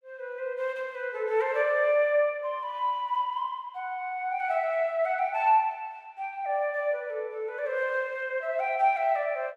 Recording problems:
none

